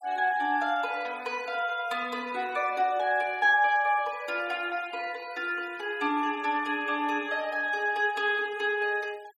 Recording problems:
noise reduction artefacts; signal-to-artefact ratio 24 dB

